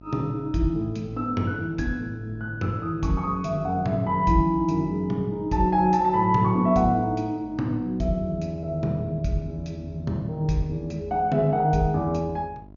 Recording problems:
treble cut off; nothing above 6.9 kHz
hum; 50 Hz, harmonics up to 750 Hz, SNR 22 dB

